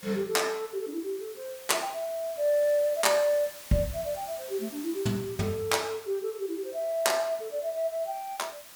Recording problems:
hiss; slope 0 dB per octave, SNR 16 dB

